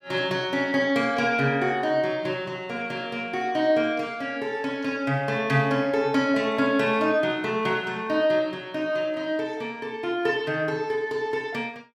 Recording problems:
none

